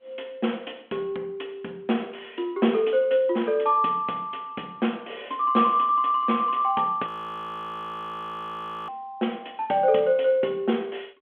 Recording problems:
phone line; 240 Hz to 3.4 kHz, G.726
frozen audio; at 7 s for 2 s

